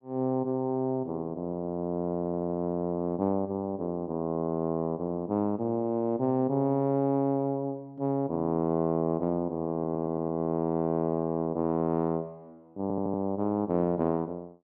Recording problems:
stutter; at 2 s, at 9.5 s and at 13 s

